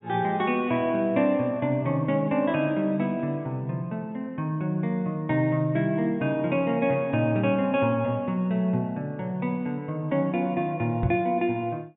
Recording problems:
treble missing; nothing above 4 kHz
microphone thump; at 11 s; peak +2 dB vs average level

